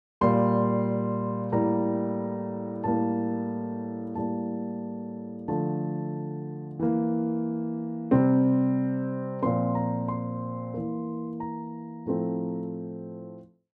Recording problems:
none

